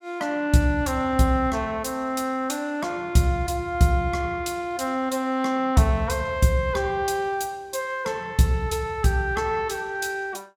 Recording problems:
none

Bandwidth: 17 kHz